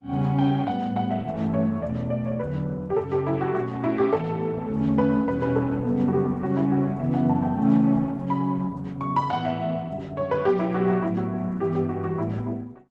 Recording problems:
codec artefacts; Opus, log-spectral distance 2 dB

